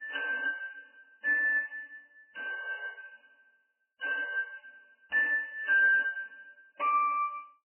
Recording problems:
lossy codec; MP3, log-spectral distance 5 dB, nothing above 2.9 kHz

